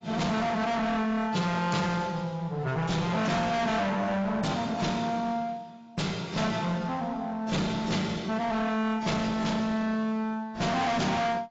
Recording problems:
lossy compression; AAC, log-spectral distance 3 dB, nothing above 7.3 kHz
distortion; hard clipping, uneven, signal-to-distortion ratio 5 dB

